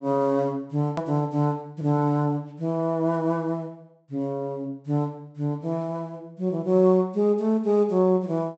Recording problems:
treble missing; nothing above 7.9 kHz
edit click; at 1 s

